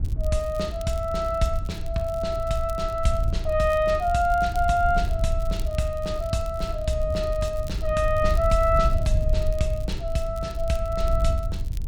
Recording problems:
wind noise; below 72 Hz, SNR 4 dB
crackle; vinyl, SNR 24 dB

